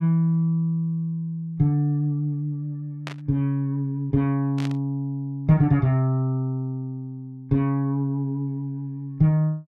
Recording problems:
burst of static; at 3 s and at 4.5 s; peak -6 dB vs average level

